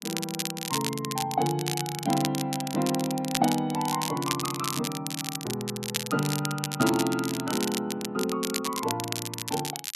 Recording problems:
crackling; vinyl, SNR 4 dB

